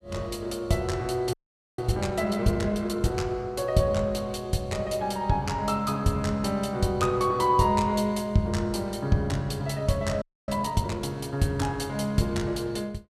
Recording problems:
frozen audio; at 1.5 s and at 10 s

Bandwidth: 14.5 kHz